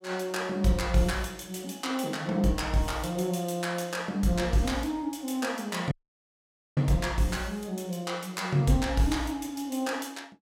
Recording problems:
dropout; at 6 s for 1 s

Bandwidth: 16.5 kHz